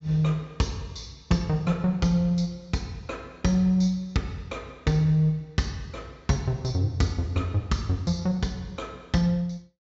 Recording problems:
low-pass filter; nothing above 8 kHz

